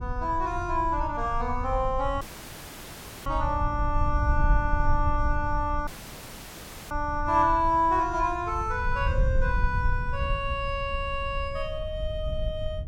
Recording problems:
low-frequency rumble; below 76 Hz, SNR 4 dB
dropout; at 2 s for 1 s and at 6 s for 1 s

